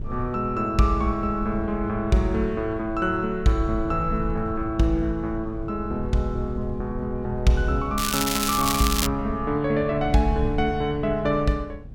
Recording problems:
wind on the microphone; below 100 Hz, SNR 11 dB
crackle; from 8 to 9 s; loose cable, SNR 1 dB

